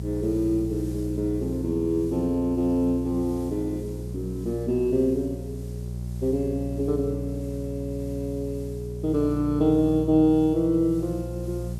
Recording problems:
mains hum; 60 Hz, harmonics up to 420 Hz, SNR 8 dB
hiss; slope 0 dB per octave, SNR 27 dB

